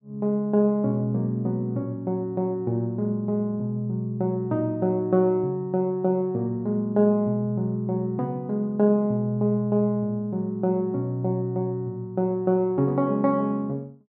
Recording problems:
none

